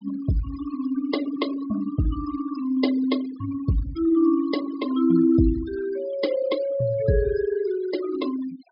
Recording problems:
treble missing; nothing above 5.5 kHz
denoising artefacts; signal-to-artefact ratio 15 dB

